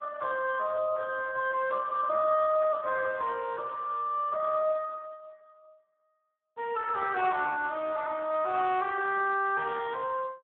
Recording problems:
phone line; 320 Hz to 3.3 kHz, Speex

